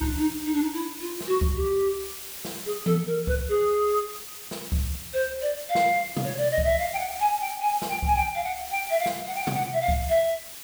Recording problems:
hiss; slope +1 dB per octave, SNR 11 dB

